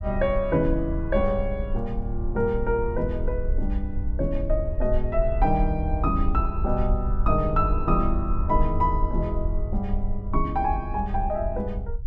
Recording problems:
low-frequency rumble; below 58 Hz, SNR 3 dB

